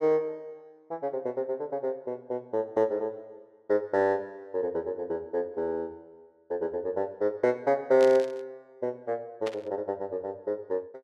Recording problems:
burst of static; at 8 s and at 9.5 s; peak -5 dB vs average level

